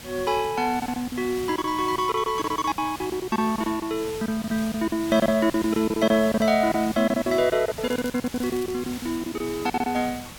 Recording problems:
hiss; slope -1 dB per octave, SNR 13 dB
lost packets; 15% of the sound replaced, filled with silence
crackling; at 8 s; loose cable, SNR 21 dB

